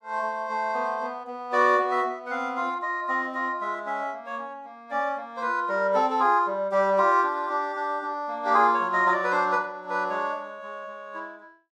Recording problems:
none

